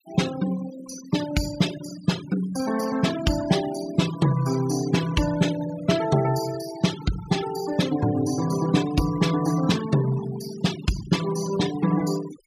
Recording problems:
noise reduction artefacts; signal-to-artefact ratio 13 dB

